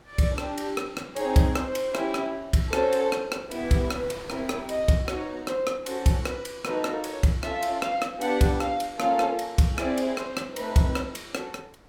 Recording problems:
wind noise; below 1.3 kHz, SNR 24 dB

